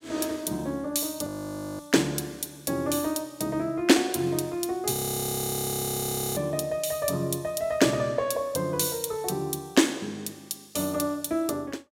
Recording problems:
audio freezing; at 1.5 s for 0.5 s and at 5 s for 1.5 s

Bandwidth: 16 kHz